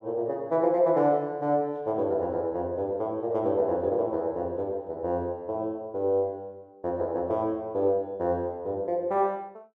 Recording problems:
none

